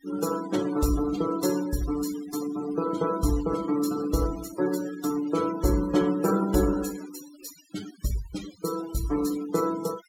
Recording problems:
noise reduction artefacts; signal-to-artefact ratio 15 dB

